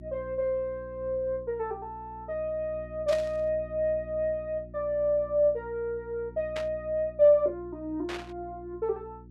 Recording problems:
hum; 60 Hz, harmonics up to 360 Hz, SNR 18 dB
static burst; at 3 s, at 6.5 s and at 8 s; peak -5 dB vs average level

